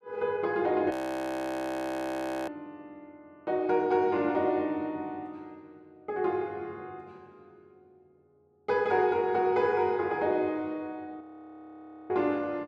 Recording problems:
frozen audio; at 1 s for 1.5 s and at 11 s for 1 s

